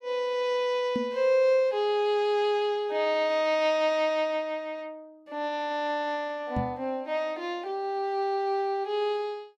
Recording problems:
knock on the microphone; at 1 s and at 6.5 s; peak 0 dB vs average level

